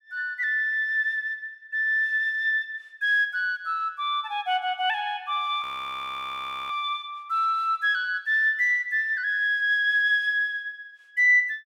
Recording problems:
frozen audio; at 5.5 s for 1 s

